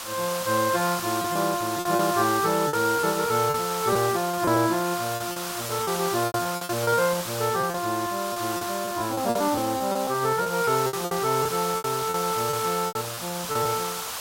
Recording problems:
background hiss; SNR 6 dB
lost packets; 11% of the sound replaced, filled with repeated pitch periods

